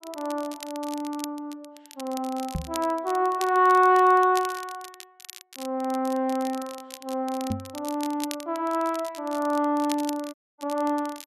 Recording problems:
crackling; vinyl, SNR 17 dB
microphone bump; at 2.5 s and at 7.5 s; peak -1 dB vs average level
dropout; at 10 s

